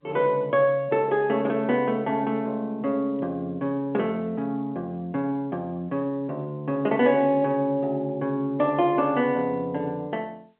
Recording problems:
telephone audio; 190 Hz to 3.3 kHz, G.711

